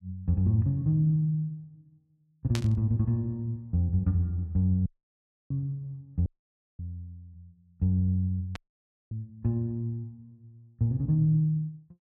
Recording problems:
burst of static; at 2.5 s and at 8.5 s; peak -3 dB vs average level
audio cutting out; at 5 s for 0.5 s, at 6.5 s for 0.5 s and at 8.5 s for 0.5 s

